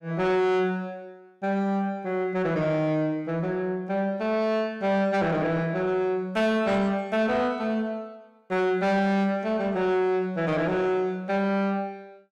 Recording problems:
distorted audio; soft clipping, signal-to-distortion ratio 10 dB

